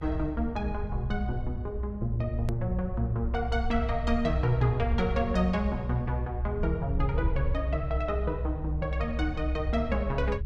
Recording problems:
electrical hum; 50 Hz, harmonics up to 500 Hz, SNR 20 dB
low-frequency rumble; below 66 Hz, strongest tone 64 Hz, SNR 2 dB
hard cut with a click; at 2.5 s

